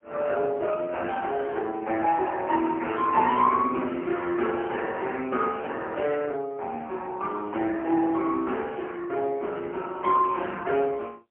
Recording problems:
telephone audio; 280 Hz to 3.1 kHz, AMR-NB, then MP3

